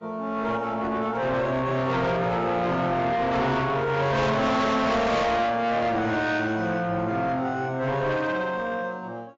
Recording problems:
lossy compression; AAC, log-spectral distance 2 dB, nothing above 7.3 kHz
distorted audio; soft clipping, signal-to-distortion ratio 6 dB

